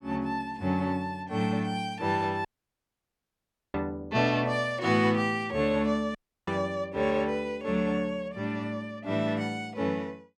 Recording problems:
dropout; at 2.5 s for 1.5 s and at 6 s

